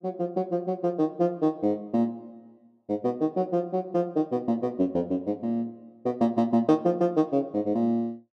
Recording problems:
none

